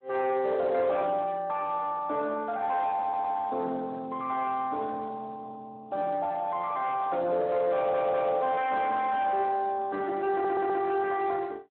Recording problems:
phone line; 240 Hz to 3.1 kHz, Speex
distorted audio; soft clipping, signal-to-distortion ratio 9 dB
audio stuttering; at 3 s, at 7.5 s and at 10 s

